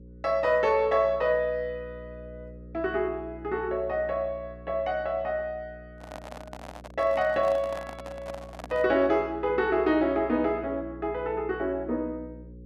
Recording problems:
electrical hum; 60 Hz, harmonics up to 540 Hz, SNR 19 dB
microphone handling noise; from 6 to 9 s; peak -7 dB vs average level

